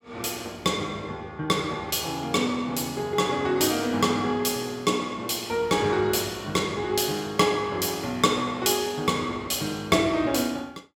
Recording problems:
none

